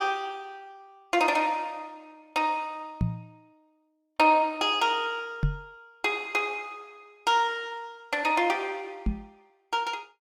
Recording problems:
knock on the microphone; at 3 s, at 5.5 s and at 9 s; peak +4 dB vs average level

